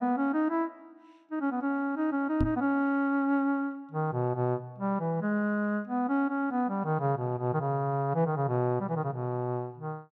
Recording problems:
knock on the microphone; at 2.5 s; peak +4 dB vs average level

